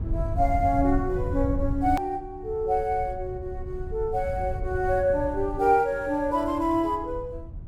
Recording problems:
low-frequency rumble; below 100 Hz, SNR 8 dB
click at an edit; at 2 s

